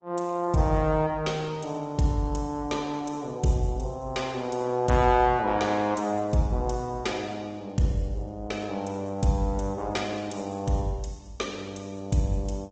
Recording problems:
low-pass filter; nothing above 7.6 kHz
codec artefacts; Opus, log-spectral distance 3 dB

